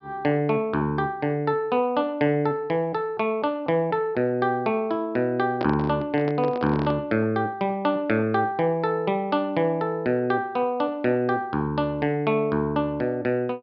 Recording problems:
treble cut off; nothing above 5.5 kHz
handling noise; from 5.5 to 7 s; peak -1 dB vs average level

